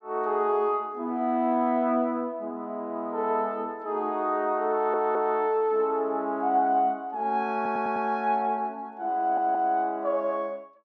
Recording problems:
audio stuttering; at 4.5 s, at 7.5 s and at 9 s

